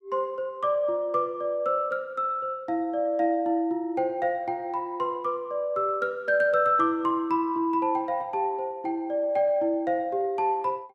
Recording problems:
none

